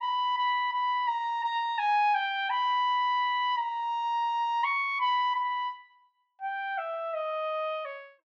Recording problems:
low-pass filter; nothing above 8 kHz

